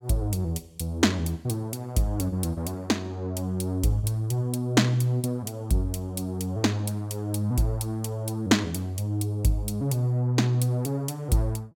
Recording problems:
none

